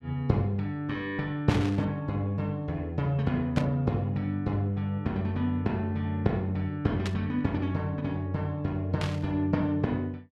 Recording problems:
static burst; 4 times, first at 1.5 s; peak -2 dB vs average level

